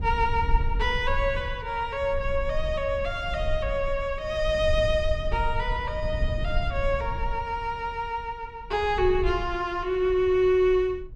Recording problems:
low-frequency rumble; below 66 Hz, SNR 7 dB

